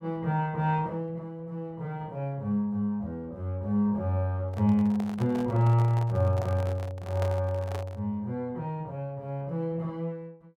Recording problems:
handling noise; from 4.5 to 8 s; peak -4 dB vs average level

